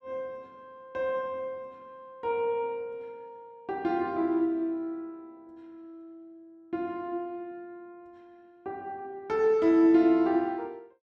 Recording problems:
none

